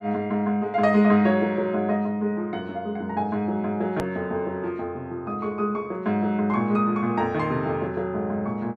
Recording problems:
click at an edit; at 4 s

